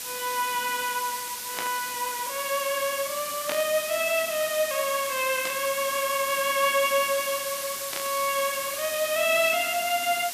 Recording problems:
hiss; slope +2 dB per octave, SNR 5 dB
burst of static; 4 times, first at 1.5 s; peak -2 dB vs average level

